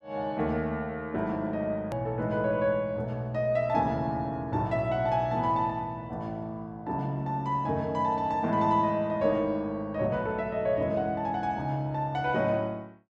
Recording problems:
click at an edit; at 2 s

